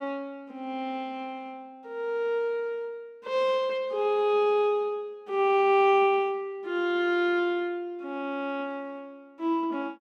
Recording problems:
none

